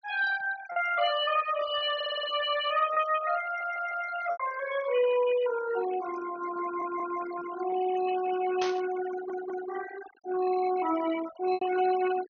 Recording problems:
low-pass filter; nothing above 6.4 kHz
noise reduction artefacts; signal-to-artefact ratio 12 dB
packet loss; 3% of the sound replaced, filled with repeated pitch periods
audio stuttering; 4 times, first at 2 s
static burst; at 8.5 s; peak -3 dB vs average level

